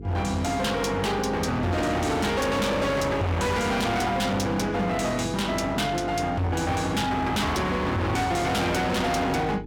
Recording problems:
distorted audio; hard clipping, signal-to-distortion ratio 6 dB
hum; 50 Hz, harmonics up to 450 Hz, SNR 14 dB

